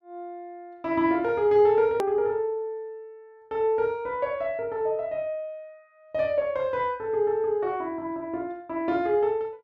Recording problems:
edit click; at 2 s

